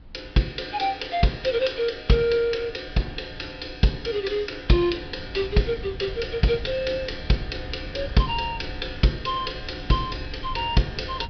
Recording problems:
treble missing; nothing above 5.5 kHz
wind noise; below 120 Hz, SNR 15 dB

